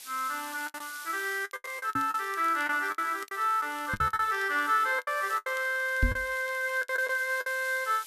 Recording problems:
background hiss; SNR 17 dB
crackle; vinyl, SNR 27 dB
lost packets; 13% of the sound replaced, filled with the last packet
knock on the microphone; at 2 s, at 4 s and at 6 s; peak +5 dB vs average level

